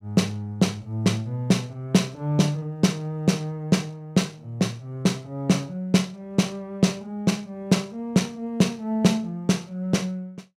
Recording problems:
none

